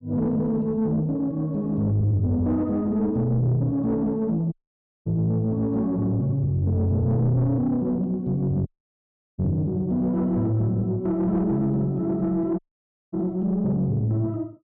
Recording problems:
distortion; soft clipping, signal-to-distortion ratio 11 dB
audio cutting out; at 4.5 s for 0.5 s, at 8.5 s for 0.5 s and at 13 s for 0.5 s

